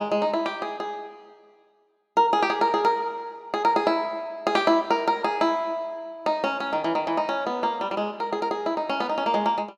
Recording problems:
none

